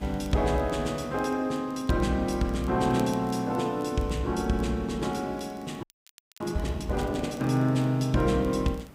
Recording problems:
hiss; slope -6 dB per octave, SNR 24 dB
crackle; vinyl, SNR 28 dB
audio freezing; at 6 s for 0.5 s

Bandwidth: 15.5 kHz